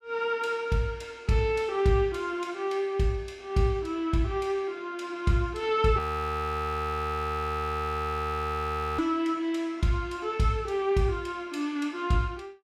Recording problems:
frozen audio; at 6 s for 3 s

